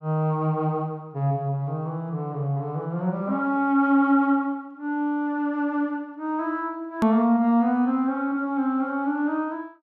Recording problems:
edit click; at 7 s

